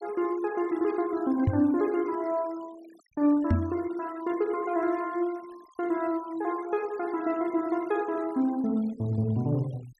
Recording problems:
denoising artefacts; signal-to-artefact ratio 24 dB
knock on the microphone; at 1.5 s and at 3.5 s; peak +7 dB vs average level

